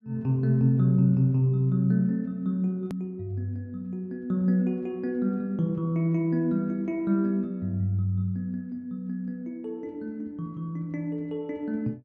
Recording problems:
hard cut with a click; at 3 s

